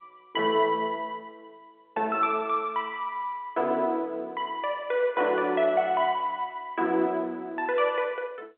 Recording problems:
telephone audio; 300 Hz to 3.5 kHz, G.711

